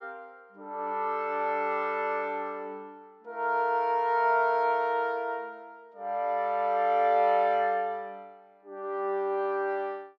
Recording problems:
none

